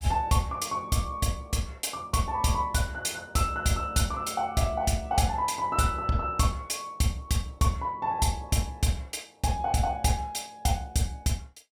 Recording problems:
none

